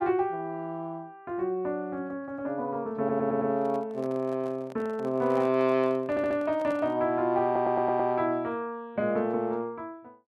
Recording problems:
audio stuttering; at 3 s, at 6 s and at 7.5 s
microphone handling noise; from 3 to 7 s; peak -11 dB vs average level

